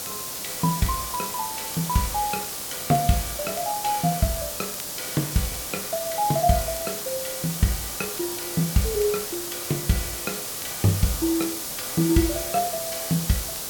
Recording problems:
hiss; SNR 3 dB
crackling; vinyl, SNR 22 dB

